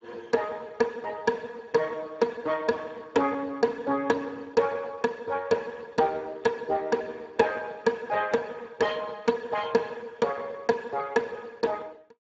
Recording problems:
codec artefacts; Speex, log-spectral distance 4 dB

